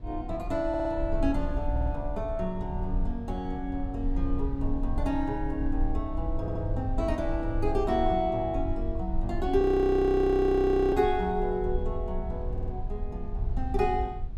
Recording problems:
rumble; below 64 Hz, SNR 6 dB
stutter; 4 times, first at 0.5 s
audio freezing; at 9.5 s for 1.5 s

